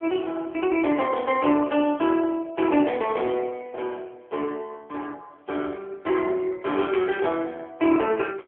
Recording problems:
telephone audio; 260 Hz to 3.2 kHz, AMR-NB

